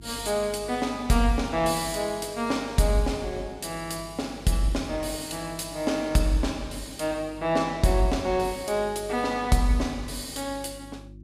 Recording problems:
hum; 50 Hz, harmonics up to 350 Hz, SNR 20 dB

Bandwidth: 15 kHz